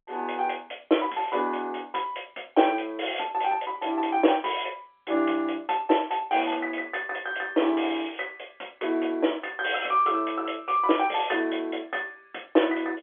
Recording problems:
telephone audio; 260 Hz to 3.4 kHz, G.711

